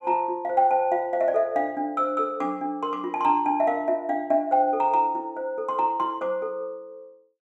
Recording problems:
none

